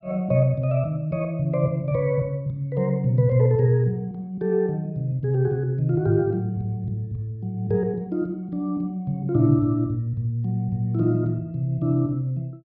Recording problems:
treble cut off; nothing above 5.5 kHz

